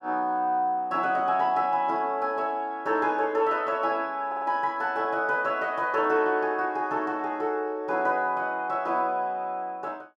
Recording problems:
stutter; at 4.5 s

